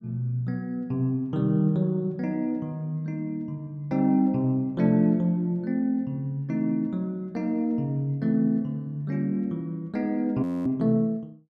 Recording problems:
frozen audio; at 10 s

